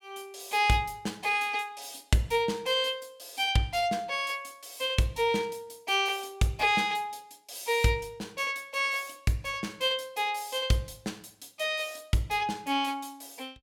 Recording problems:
none

